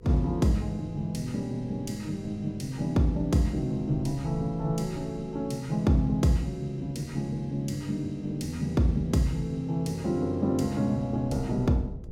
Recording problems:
hum; 50 Hz, harmonics up to 500 Hz, SNR 23 dB
wind on the microphone; below 160 Hz, SNR 18 dB

